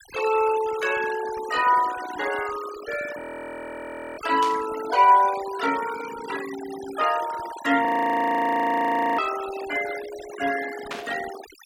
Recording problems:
denoising artefacts; signal-to-artefact ratio 13 dB
audio freezing; at 3 s for 1 s and at 8 s for 1.5 s
static burst; at 4.5 s and at 11 s; peak -4 dB vs average level

